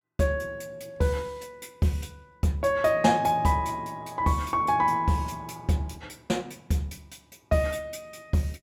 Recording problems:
none

